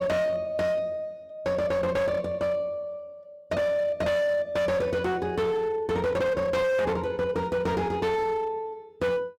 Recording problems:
distortion; hard clipping, signal-to-distortion ratio 8 dB

